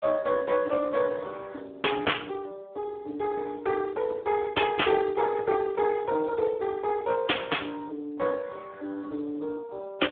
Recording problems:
telephone audio; 260 Hz to 3.6 kHz, Speex

